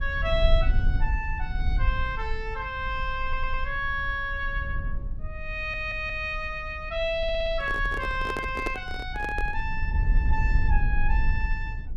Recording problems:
low-frequency rumble; below 56 Hz, strongest tone 22 Hz, SNR 1 dB
audio stuttering; at 3 s, at 5.5 s and at 7 s
microphone handling noise; from 7.5 to 9.5 s; peak +2 dB vs average level

